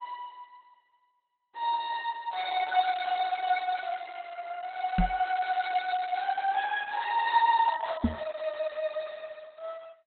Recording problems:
lossy codec; Opus, log-spectral distance 4 dB, nothing above 3.8 kHz
microphone bump; at 5 s and at 8 s; peak +7 dB vs average level

